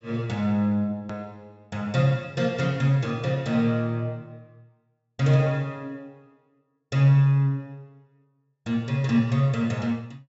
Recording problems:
treble cut off; nothing above 8 kHz
hard cut with a click; at 1 s

